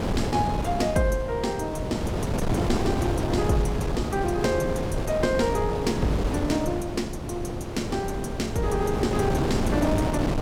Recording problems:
wind on the microphone; below 480 Hz, SNR 1 dB

